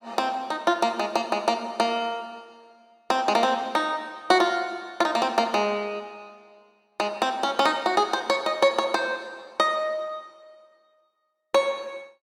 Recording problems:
none

